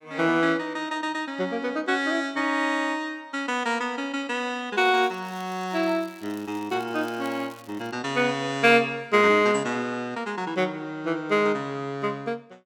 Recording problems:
crackle; from 5 to 8 s; loose cable, SNR 25 dB

